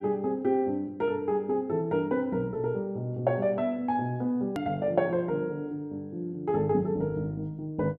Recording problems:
click at an edit; at 4.5 s

